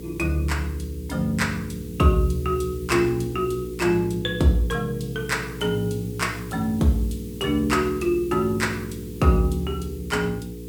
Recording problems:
hum; 60 Hz, harmonics up to 480 Hz, SNR 12 dB
hiss; slope +2 dB per octave, SNR 22 dB

